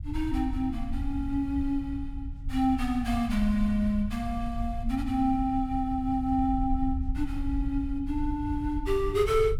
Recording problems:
rumble; below 74 Hz, SNR 7 dB

